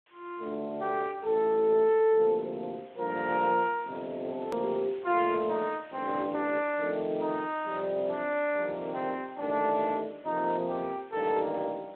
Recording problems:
telephone audio; 280 Hz to 3.7 kHz, Speex
background hiss; SNR 27 dB
click at an edit; at 4.5 s

